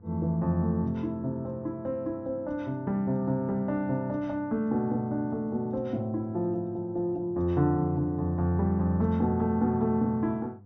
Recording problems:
treble missing; nothing above 6 kHz
hum; 50 Hz, harmonics up to 700 Hz, SNR 23 dB

